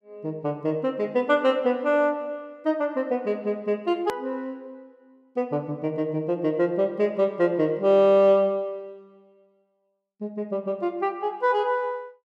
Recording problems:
hard cut with a click; at 4 s

